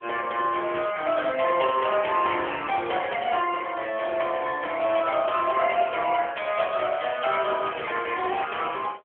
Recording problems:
phone line; 260 Hz to 3.3 kHz, AMR-NB

